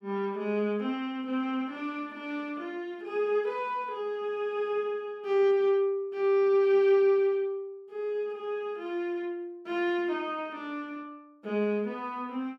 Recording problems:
none

